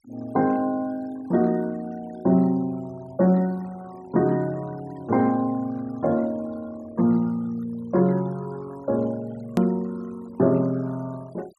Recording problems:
noise reduction artefacts; signal-to-artefact ratio 25 dB
hard cut with a click; at 9.5 s

